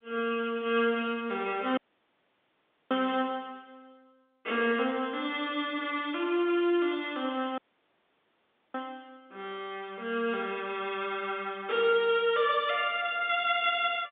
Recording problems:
telephone audio; 190 Hz to 3.7 kHz, G.711
audio cutting out; at 2 s for 1 s and at 7.5 s for 1 s

